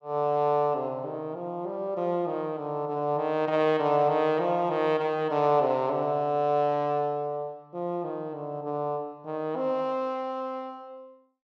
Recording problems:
none

